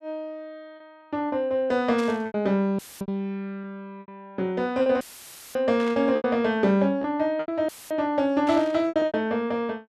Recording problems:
packet loss; 9% of the sound replaced, filled with repeated pitch periods
static burst; at 2 s, at 6 s and at 8.5 s; peak -10 dB vs average level
audio cutting out; at 3 s, at 5 s for 0.5 s and at 7.5 s; filled with static

